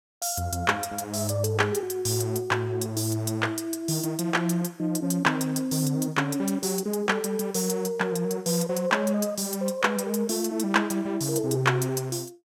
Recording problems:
none

